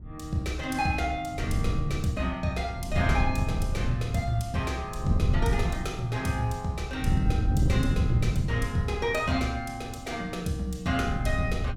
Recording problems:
wind on the microphone; below 140 Hz, SNR 0 dB

